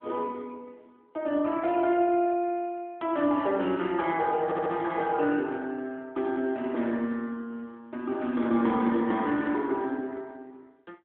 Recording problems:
phone line; 190 Hz to 3.6 kHz, AMR-NB
stutter; at 4.5 s

